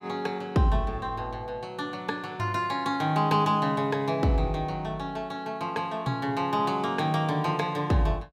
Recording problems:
none

